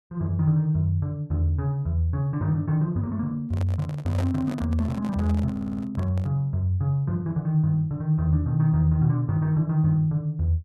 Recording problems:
handling noise; from 3.5 to 6.5 s; peak -5 dB vs average level
audio stuttering; at 5.5 s

